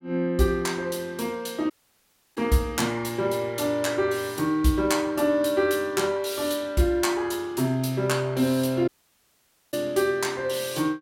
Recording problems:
audio cutting out; at 1.5 s for 0.5 s and at 9 s for 1 s

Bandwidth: 16.5 kHz